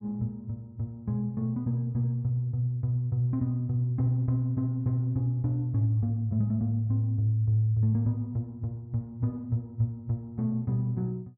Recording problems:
none

